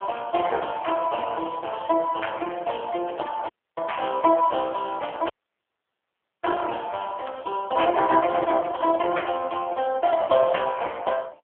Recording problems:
telephone audio; 280 Hz to 3.3 kHz, AMR-NB
dropout; at 3.5 s and at 5.5 s for 1 s

